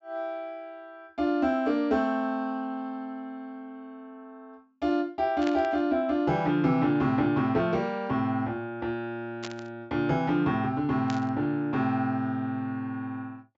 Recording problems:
low-pass filter; nothing above 8 kHz
static burst; at 5.5 s, at 9.5 s and at 11 s; peak -6 dB vs average level

